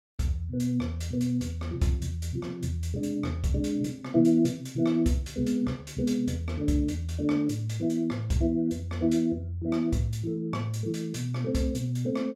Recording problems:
none

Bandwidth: 16 kHz